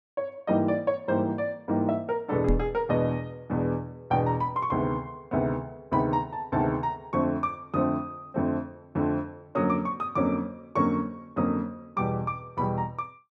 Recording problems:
knock on the microphone; at 2.5 s; peak +4 dB vs average level

